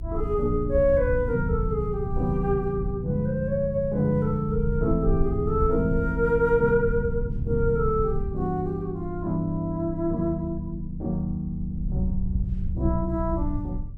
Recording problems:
rumble; below 90 Hz, SNR 7 dB

